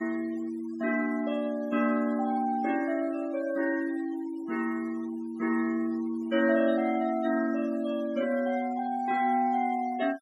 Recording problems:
noise reduction artefacts; signal-to-artefact ratio 21 dB

